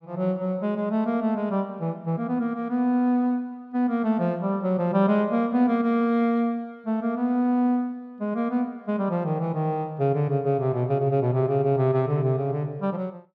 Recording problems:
none

